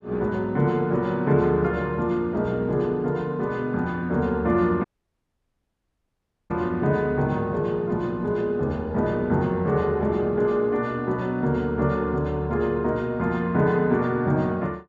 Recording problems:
dropout; at 5 s for 1.5 s

